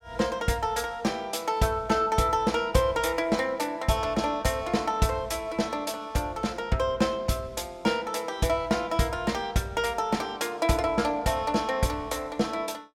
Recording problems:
none

